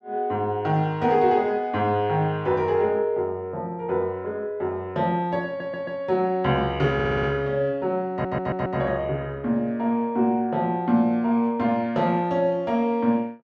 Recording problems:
audio stuttering; at 5.5 s, at 7 s and at 8 s

